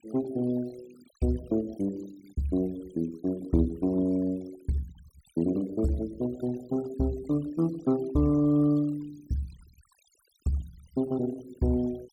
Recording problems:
noise reduction artefacts; signal-to-artefact ratio 22 dB

